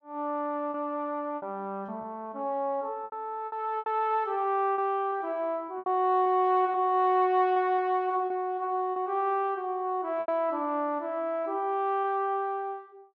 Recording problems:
lost packets; 7% of the sound replaced, filled with repeated pitch periods

